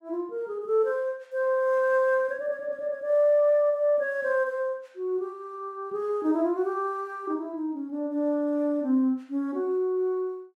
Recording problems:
none

